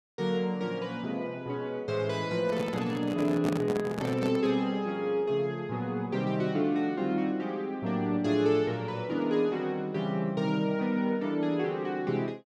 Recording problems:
microphone handling noise; from 2.5 to 4.5 s; peak +1 dB vs average level

